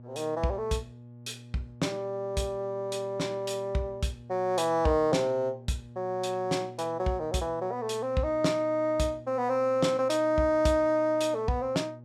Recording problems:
hum; 60 Hz, harmonics up to 840 Hz, SNR 19 dB

